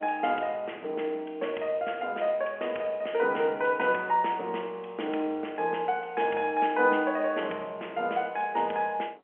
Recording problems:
phone line; 280 Hz to 3.2 kHz, G.711

